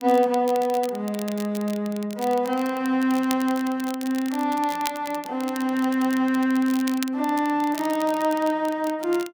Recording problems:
crackle; vinyl, SNR 16 dB

